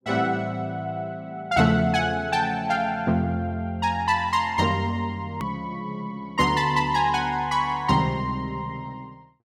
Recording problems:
click at an edit; at 5.5 s

